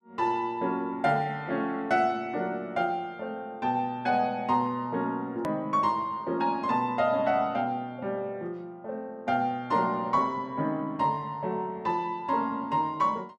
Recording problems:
hard cut with a click; at 5.5 s

